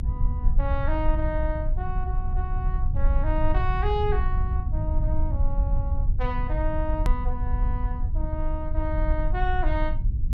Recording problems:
low-frequency rumble; below 64 Hz, SNR -5 dB
hard cut with a click; at 7 s

